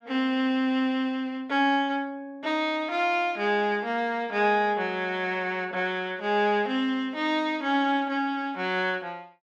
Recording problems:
none

